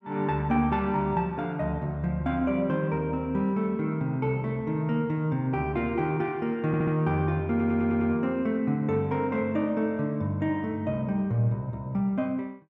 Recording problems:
audio stuttering; at 6.5 s and at 7.5 s

